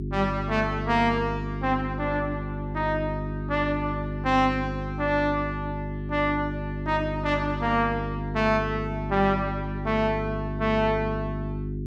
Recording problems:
mains hum; 50 Hz, harmonics up to 400 Hz, SNR 5 dB

